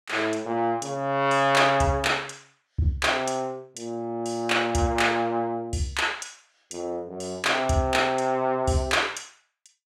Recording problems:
none

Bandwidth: 16 kHz